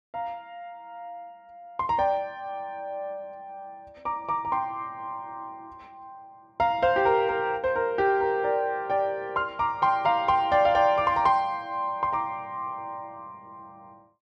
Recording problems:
none

